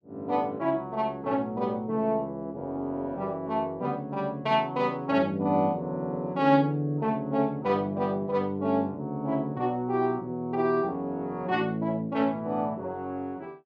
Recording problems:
none

